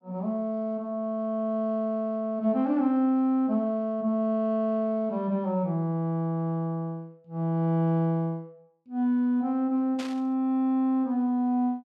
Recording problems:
burst of static; at 10 s; peak -8 dB vs average level

